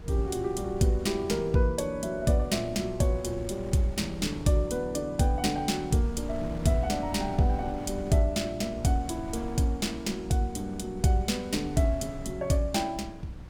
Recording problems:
electrical hum; 60 Hz, harmonics up to 300 Hz, SNR 20 dB
wind on the microphone; below 150 Hz, SNR 15 dB

